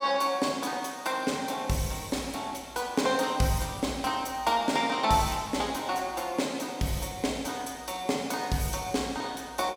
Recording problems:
none

